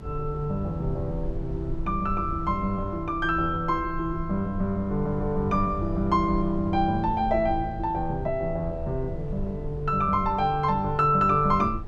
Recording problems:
rumble; below 86 Hz, SNR 11 dB

